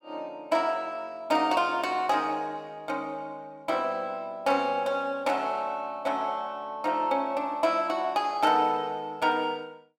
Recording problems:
none

